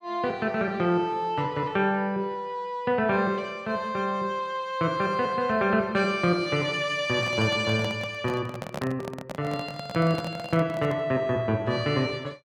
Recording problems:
microphone handling noise; from 7 to 11 s; peak -4 dB vs average level

